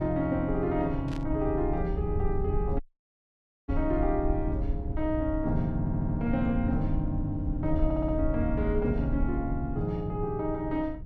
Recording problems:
rumble; below 82 Hz, SNR 4 dB
static burst; at 1 s; peak -11 dB vs average level
audio cutting out; at 3 s for 1 s
stutter; at 6 s and at 8 s

